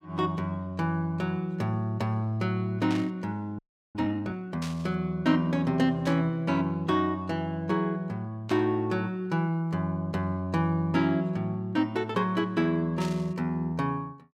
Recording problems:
burst of static; 5 times, first at 3 s; peak -6 dB vs average level
audio freezing; at 3.5 s

